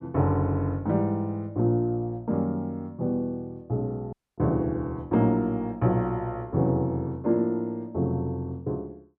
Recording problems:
audio cutting out; at 4 s

